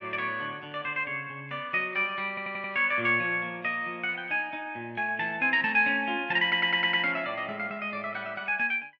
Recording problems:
stutter; at 2.5 s and at 6.5 s

